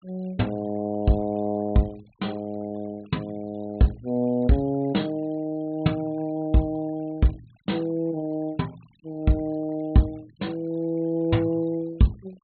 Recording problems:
treble missing; nothing above 4.2 kHz
noise reduction artefacts; signal-to-artefact ratio 28 dB

